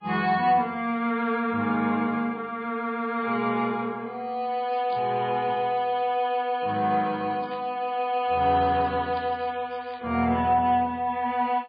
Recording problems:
codec artefacts; MP3, log-spectral distance 2 dB, nothing above 4.5 kHz
crackling; at 4.5 s, at 7.5 s and from 8.5 to 10 s; loose cable, SNR 26 dB

